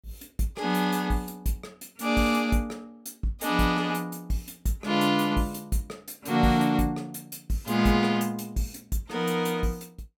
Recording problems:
none

